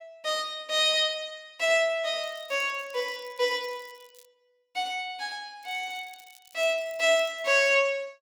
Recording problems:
crackle; from 2 to 4.5 s and from 5.5 to 7.5 s; loose cable, SNR 27 dB

